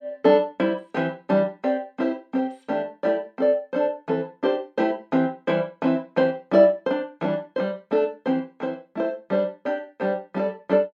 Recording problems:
none

